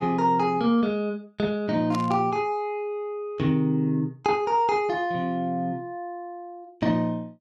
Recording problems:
burst of static; at 2 s; peak -7 dB vs average level

